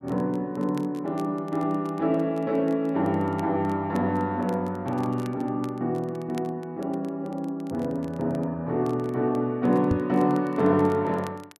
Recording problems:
crackling; vinyl, SNR 27 dB
microphone bump; at 10 s; peak +2 dB vs average level

